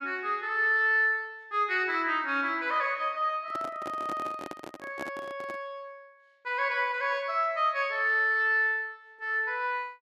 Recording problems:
microphone handling noise; from 3.5 to 5.5 s; peak -6 dB vs average level

